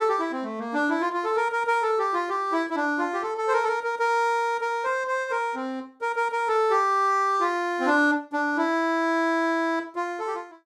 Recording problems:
none

